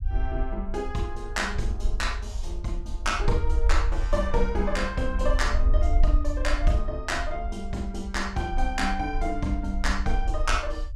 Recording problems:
low-frequency rumble; below 52 Hz, SNR 1 dB

